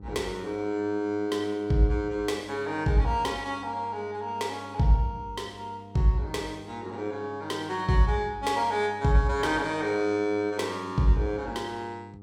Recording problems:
electrical hum; 50 Hz, harmonics up to 900 Hz, SNR 19 dB

